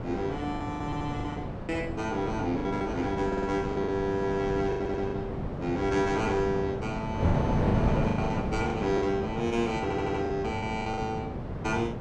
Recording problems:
wind noise; below 450 Hz, SNR 2 dB
packet loss; 9% of the sound replaced, filled with the last packet
audio stuttering; 4 times, first at 1 s

